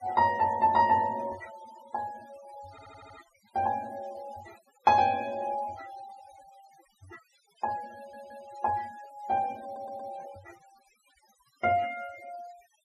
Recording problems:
noise reduction artefacts; signal-to-artefact ratio 22 dB
stutter; at 2.5 s, at 8 s and at 9.5 s

